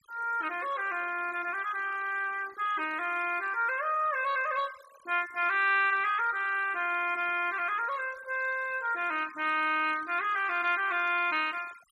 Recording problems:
denoising artefacts; signal-to-artefact ratio 20 dB

